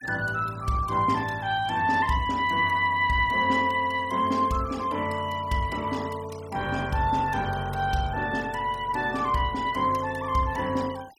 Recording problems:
noise reduction artefacts; signal-to-artefact ratio 21 dB

